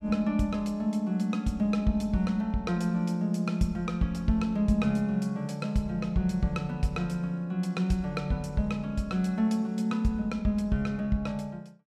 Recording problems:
none

